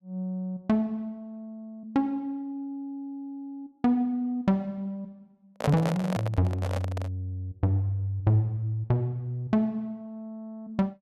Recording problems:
handling noise; from 5.5 to 7 s; peak +5 dB vs average level

